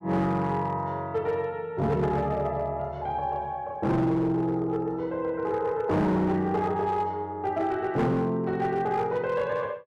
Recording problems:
distortion; hard clipping, signal-to-distortion ratio 11 dB

